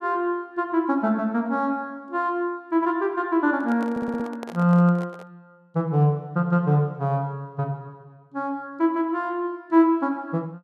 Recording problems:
microphone handling noise; from 3.5 to 5.5 s; peak -8 dB vs average level
stutter; at 4 s

